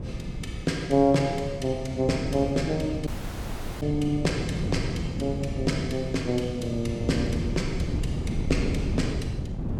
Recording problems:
wind noise; below 210 Hz, SNR 5 dB
audio cutting out; at 3 s for 1 s

